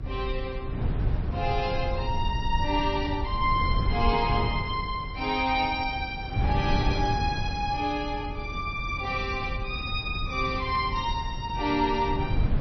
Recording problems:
lossy compression; MP3, log-spectral distance 2 dB, nothing above 5.8 kHz
rumble; below 82 Hz, SNR 8 dB
wind on the microphone; below 160 Hz, SNR 5 dB

